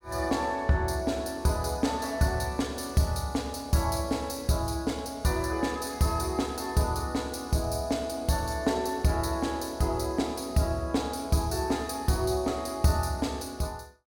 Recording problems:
none

